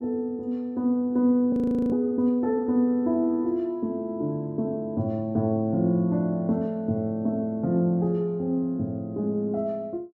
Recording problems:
audio freezing; at 1.5 s

